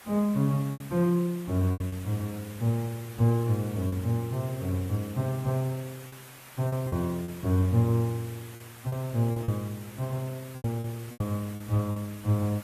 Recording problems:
lossy compression; AAC, log-spectral distance 5 dB
background hiss; SNR 18 dB
lost packets; 7% of the sound replaced, filled with repeated pitch periods

